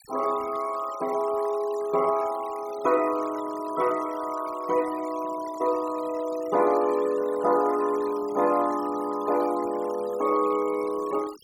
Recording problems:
noise reduction artefacts; signal-to-artefact ratio 19 dB

